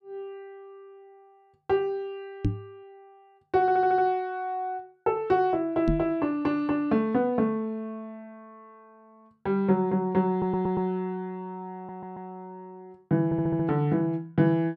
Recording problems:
microphone thump; at 2.5 s and at 6 s; peak +4 dB vs average level
stutter; 4 times, first at 3.5 s

